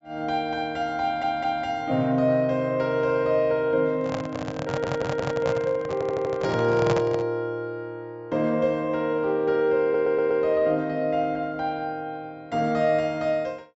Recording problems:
treble missing; nothing above 8 kHz
stutter; 4 times, first at 1 s
microphone handling noise; from 4 to 7.5 s; peak +3 dB vs average level

